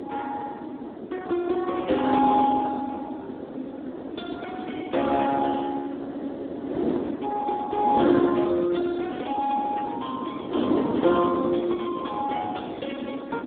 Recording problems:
phone line; 220 Hz to 3.5 kHz, Speex
wind noise; below 480 Hz, SNR 5 dB

